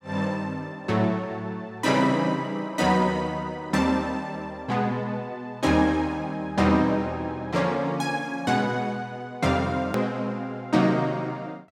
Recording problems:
click at an edit; at 10 s

